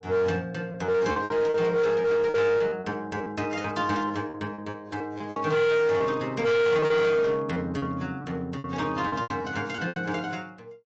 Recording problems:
lossy codec; AAC, log-spectral distance 2 dB, nothing above 7.3 kHz
distortion; hard clipping, uneven, signal-to-distortion ratio 6 dB
lost packets; 10% of the sound replaced, filled with repeated pitch periods

